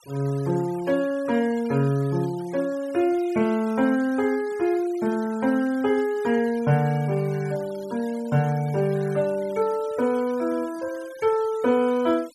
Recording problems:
noise reduction artefacts; signal-to-artefact ratio 22 dB

